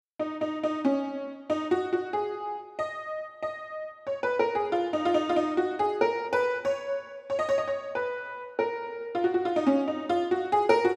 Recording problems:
none

